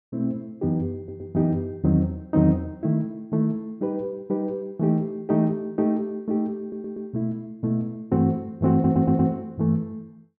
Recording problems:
audio stuttering; at 1 s, at 6.5 s and at 8.5 s

